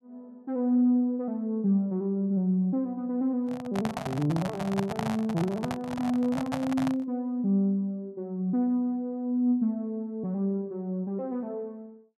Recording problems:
microphone handling noise; from 3.5 to 7 s; peak +1 dB vs average level

